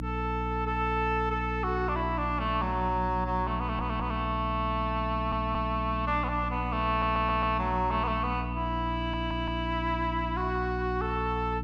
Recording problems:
hum; 60 Hz, harmonics up to 300 Hz, SNR 5 dB
stutter; 4 times, first at 3.5 s

